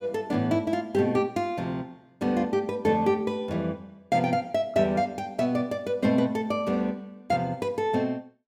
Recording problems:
none

